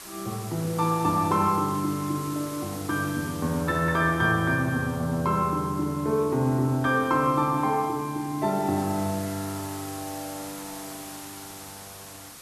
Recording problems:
background hiss; slope -1 dB per octave, SNR 15 dB

